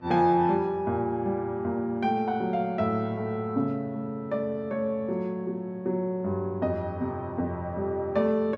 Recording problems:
mains hum; 60 Hz, harmonics up to 2.5 kHz, SNR 25 dB

